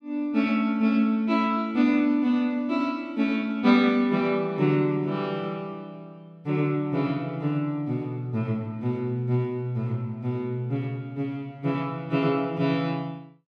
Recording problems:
none

